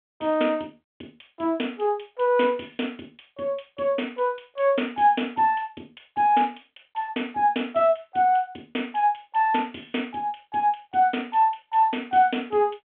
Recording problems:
phone line; 220 Hz to 3.5 kHz, G.726

